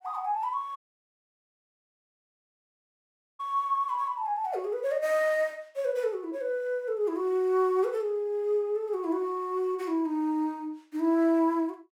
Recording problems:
dropout; at 1 s for 2.5 s

